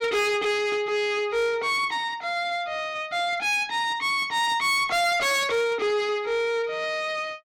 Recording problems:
distortion; soft clipping, signal-to-distortion ratio 7 dB

